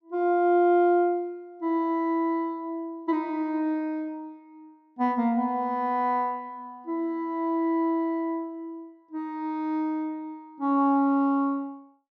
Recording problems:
none

